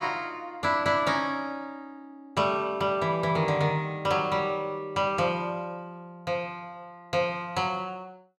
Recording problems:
none

